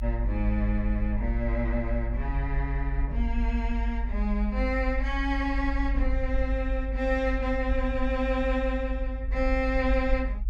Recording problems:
rumble; below 52 Hz, strongest tone 50 Hz, SNR 1 dB

